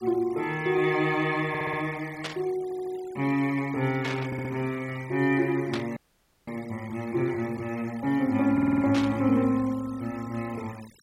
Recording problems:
denoising artefacts; signal-to-artefact ratio 22 dB
audio stuttering; 4 times, first at 1.5 s
static burst; 4 times, first at 2 s; peak -2 dB vs average level
audio freezing; at 6 s for 0.5 s

